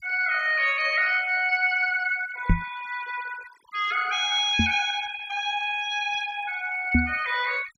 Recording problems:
denoising artefacts; signal-to-artefact ratio 20 dB
microphone thump; at 2.5 s, at 4.5 s and at 7 s; peak +6 dB vs average level

